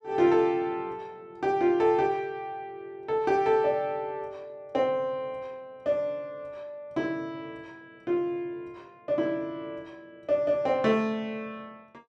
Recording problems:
none

